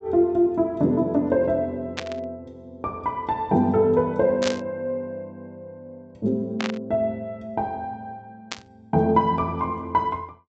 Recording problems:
low-pass filter; nothing above 8 kHz
static burst; 4 times, first at 2 s; peak 0 dB vs average level

